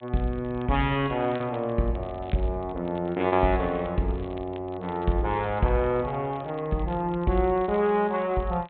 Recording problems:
low-pass filter; nothing above 4 kHz
crackle; vinyl, SNR 27 dB
lost packets; 1.8% of the sound replaced, filled with repeated pitch periods

